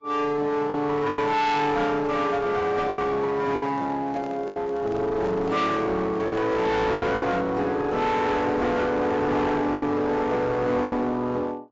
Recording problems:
lossy compression; AAC, log-spectral distance 2 dB
distorted audio; hard clipping, uneven, signal-to-distortion ratio 7 dB
lost packets; 6% of the sound replaced, filled with the last packet
handling noise; from 3.5 to 7 s; peak -9 dB vs average level

